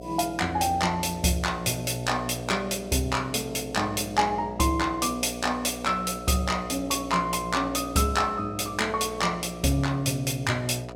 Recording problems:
hum; 60 Hz, harmonics up to 720 Hz, SNR 12 dB

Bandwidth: 17 kHz